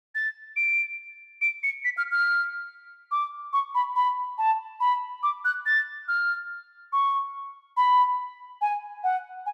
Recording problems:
none

